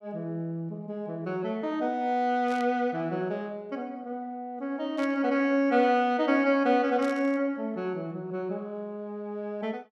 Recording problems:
static burst; at 2.5 s, at 5 s and at 7 s; peak -12 dB vs average level

